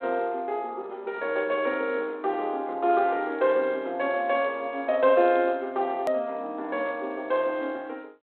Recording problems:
phone line; 260 Hz to 3.7 kHz, G.726
click at an edit; at 6 s

